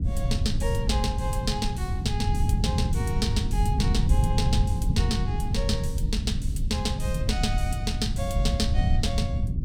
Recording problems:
low-frequency rumble; below 120 Hz, SNR -4 dB
wind noise; below 98 Hz, SNR 8 dB

